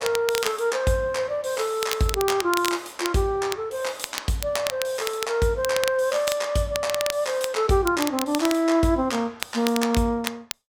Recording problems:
crackling; vinyl, SNR 8 dB

